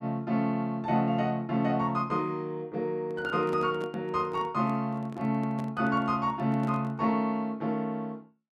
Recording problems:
microphone handling noise; from 3 to 7 s; peak -7 dB vs average level

